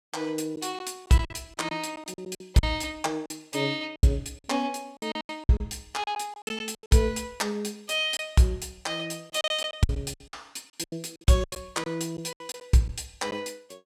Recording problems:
lost packets; 12% of the sound replaced, filled with silence

